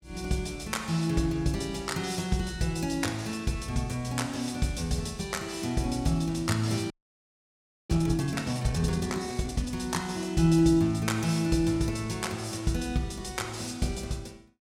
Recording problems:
audio freezing; at 7 s for 1 s

